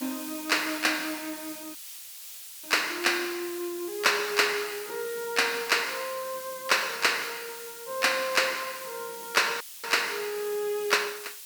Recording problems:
background hiss; slope +5 dB per octave, SNR 12 dB
dropout; at 2 s for 1 s and at 9.5 s

